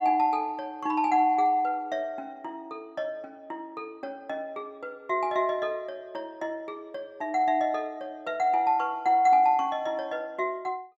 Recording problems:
none

